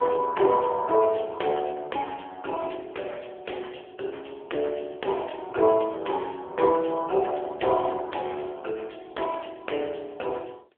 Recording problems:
phone line; 340 Hz to 3.4 kHz, AMR-NB

